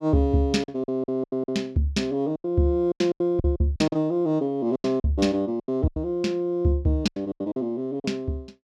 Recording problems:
packet loss; 14% of the sound replaced, filled with silence

